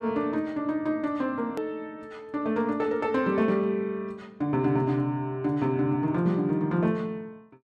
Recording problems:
click at an edit; at 1.5 s

